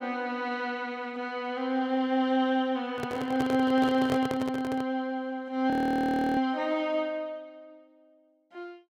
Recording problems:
handling noise; from 3 to 5 s; peak 0 dB vs average level
audio freezing; at 5.5 s for 0.5 s

